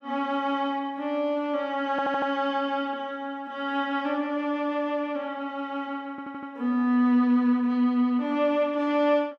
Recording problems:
audio stuttering; at 2 s and at 6 s

